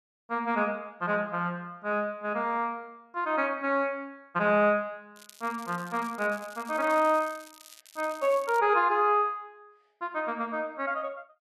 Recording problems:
crackle; from 5 to 8.5 s; loose cable, SNR 21 dB

